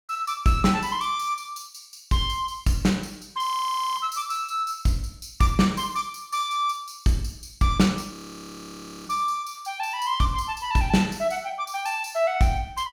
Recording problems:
audio freezing; at 3.5 s for 0.5 s and at 8 s for 1 s

